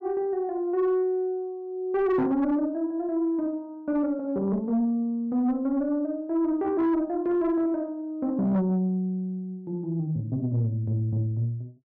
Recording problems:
distorted audio; soft clipping, signal-to-distortion ratio 11 dB

